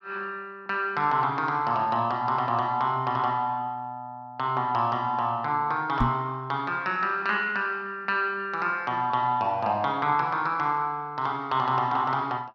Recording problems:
microphone thump; at 6 s; peak +5 dB vs average level

